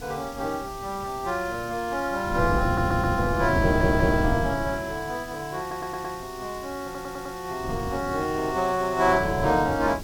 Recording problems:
hiss; slope +3 dB per octave, SNR 18 dB
wind noise; below 290 Hz, SNR 3 dB
stutter; 4 times, first at 2.5 s

